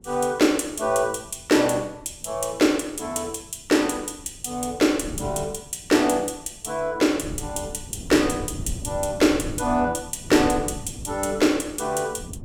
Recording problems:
wind noise; below 190 Hz, SNR 15 dB

